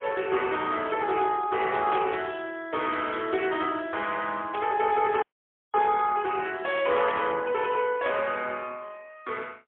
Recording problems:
phone line; 300 Hz to 3.4 kHz, AMR-NB, then MP3
static burst; at 2 s, at 4.5 s and at 7 s; peak -6 dB vs average level
audio cutting out; at 5 s for 0.5 s

